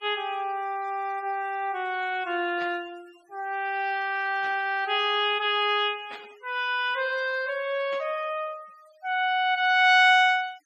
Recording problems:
denoising artefacts; signal-to-artefact ratio 27 dB
burst of static; 4 times, first at 2.5 s; peak -13 dB vs average level

